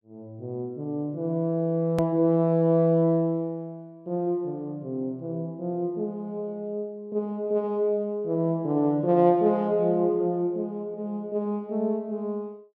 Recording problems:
click at an edit; at 2 s

